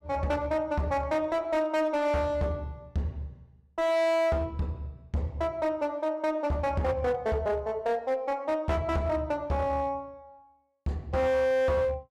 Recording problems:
distortion; hard clipping, uneven, signal-to-distortion ratio 10 dB

